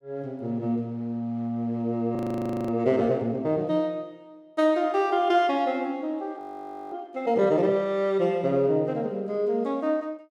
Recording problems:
audio freezing; at 2 s for 0.5 s and at 6.5 s for 0.5 s

